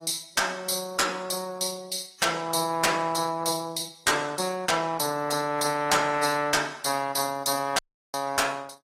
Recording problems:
lossy compression; AAC, log-spectral distance 5 dB, nothing above 13.5 kHz
distortion; hard clipping, uneven, signal-to-distortion ratio 11 dB
dropout; at 8 s

